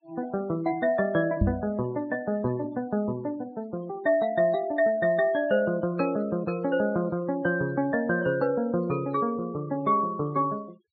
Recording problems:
treble missing; nothing above 4.6 kHz
noise reduction artefacts; signal-to-artefact ratio 24 dB
microphone thump; at 1.5 s; peak +6 dB vs average level

